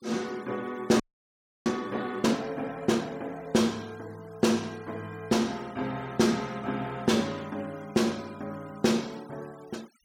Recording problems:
denoising artefacts; signal-to-artefact ratio 24 dB
audio freezing; at 1 s for 0.5 s

